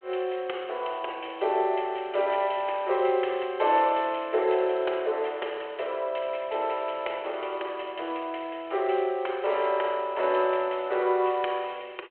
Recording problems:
phone line; 320 Hz to 3.2 kHz, G.726

